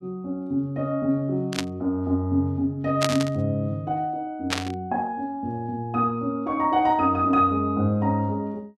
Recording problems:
burst of static; at 1.5 s, at 3 s and at 4.5 s; peak +4 dB vs average level

